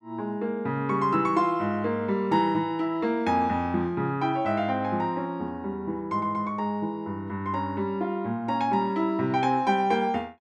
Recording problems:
none

